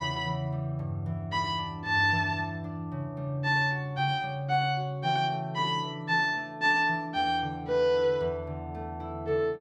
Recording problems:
none

